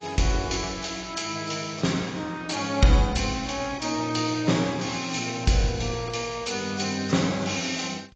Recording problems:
lossy compression; AAC, log-spectral distance 8 dB, nothing above 7.3 kHz

